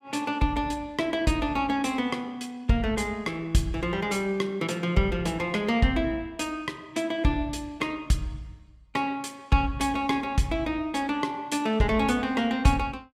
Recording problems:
none

